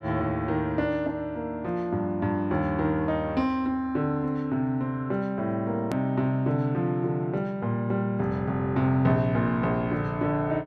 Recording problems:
click at an edit; at 6 s

